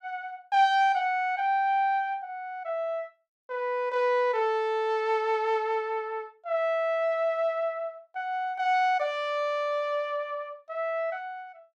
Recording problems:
none

